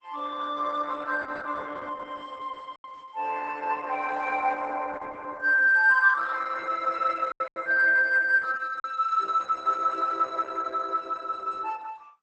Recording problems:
lossy compression; Opus, log-spectral distance 4 dB, nothing above 8 kHz
lost packets; 2% of the sound replaced, filled with silence

